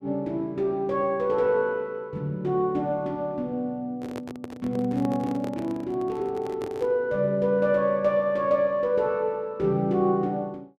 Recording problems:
microphone handling noise; from 4 to 7 s; peak -7 dB vs average level

